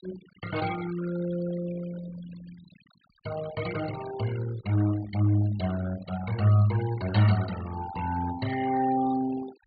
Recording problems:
treble cut off; nothing above 4.7 kHz
noise reduction artefacts; signal-to-artefact ratio 14 dB

